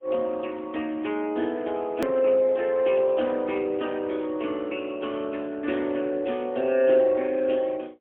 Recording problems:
phone line; 220 Hz to 3.4 kHz, AMR-NB, then MP3
edit click; at 2 s

